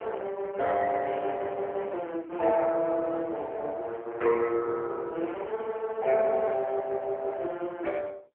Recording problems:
phone line; 300 Hz to 3.8 kHz, AMR-NB

